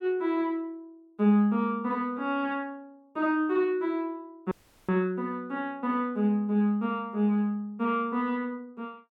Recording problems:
audio cutting out; at 4.5 s

